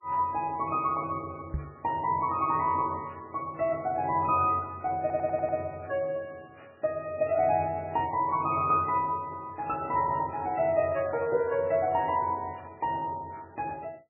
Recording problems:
lossy compression; MP3, log-spectral distance 2 dB, nothing above 2.5 kHz
knock on the microphone; at 1.5 s; peak 0 dB vs average level
stutter; at 5 s

